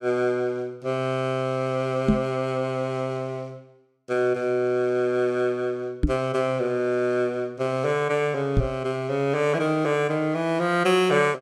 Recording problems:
microphone bump; at 2 s, at 6 s and at 8.5 s; peak +8 dB vs average level

